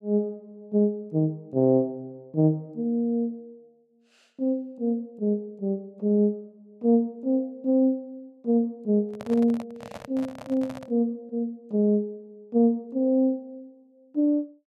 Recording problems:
microphone handling noise; from 9 to 11 s; peak -10 dB vs average level

